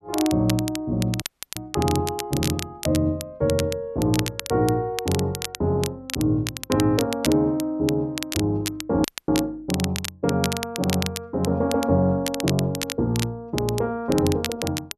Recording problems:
crackling; vinyl, SNR 8 dB
dropout; at 1 s and at 9 s

